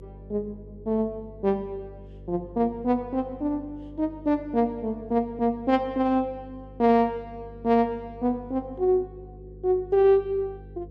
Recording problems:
hum; 50 Hz, harmonics up to 500 Hz, SNR 20 dB

